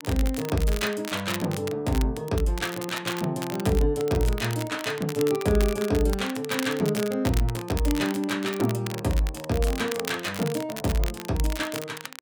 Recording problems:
crackle; vinyl, SNR 11 dB

